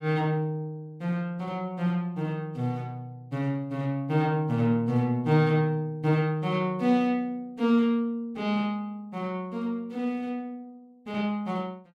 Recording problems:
none

